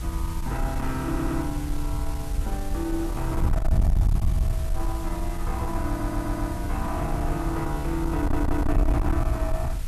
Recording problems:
distorted audio; soft clipping, signal-to-distortion ratio 8 dB
hiss; slope -2 dB per octave, SNR 13 dB
wind noise; below 78 Hz, SNR -1 dB
audio stuttering; at 1 s, at 6 s and at 8 s

